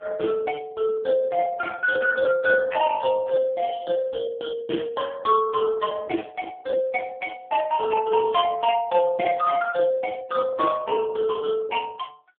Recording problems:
telephone audio; 240 Hz to 2.6 kHz, AMR-NB
packet loss; 12% of the sound replaced, filled with repeated pitch periods

